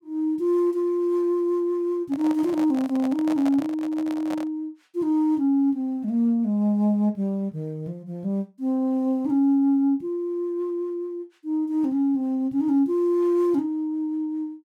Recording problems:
handling noise; from 2 to 4.5 s; peak -6 dB vs average level

